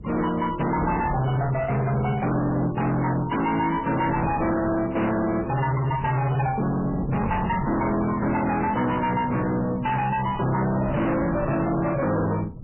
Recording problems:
lossy codec; MP3, log-spectral distance 4 dB, nothing above 3 kHz
distorted audio; hard clipping, uneven, signal-to-distortion ratio 6 dB
wind noise; below 330 Hz, SNR 11 dB

